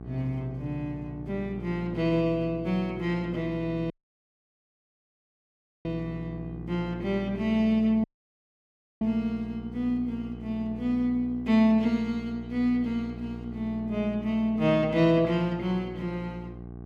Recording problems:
hum; 60 Hz, harmonics up to 840 Hz, SNR 13 dB
audio cutting out; at 4 s for 2 s and at 8 s for 1 s

